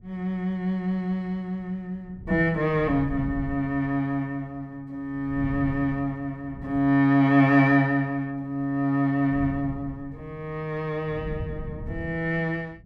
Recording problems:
wind on the microphone; below 160 Hz, SNR 14 dB

